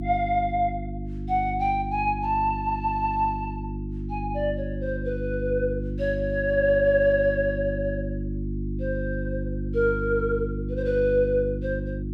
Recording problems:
hum; 50 Hz, harmonics up to 350 Hz, SNR 6 dB

